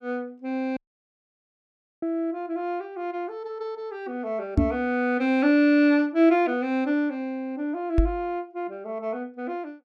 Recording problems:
audio cutting out; at 1 s for 1.5 s
microphone thump; at 4.5 s and at 8 s; peak +8 dB vs average level

